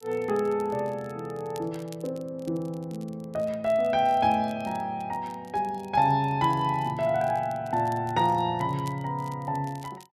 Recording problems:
crackling; vinyl, SNR 26 dB

